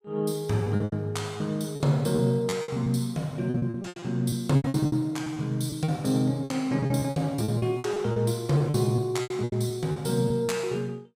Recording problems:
lost packets; 15% of the sound replaced, filled with repeated pitch periods

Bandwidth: 15.5 kHz